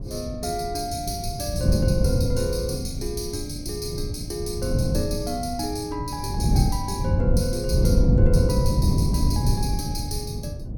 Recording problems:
wind noise; below 160 Hz, SNR -4 dB

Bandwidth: 18 kHz